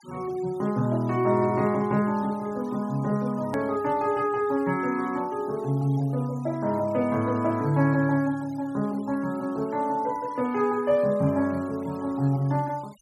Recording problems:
denoising artefacts; signal-to-artefact ratio 25 dB
hard cut with a click; at 3.5 s

